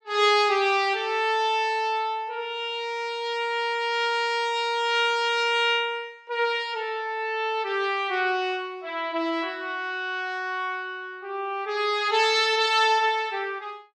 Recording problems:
none

